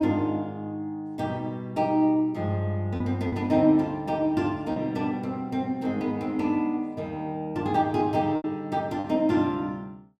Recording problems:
packet loss; 2% of the sound replaced, filled with repeated pitch periods

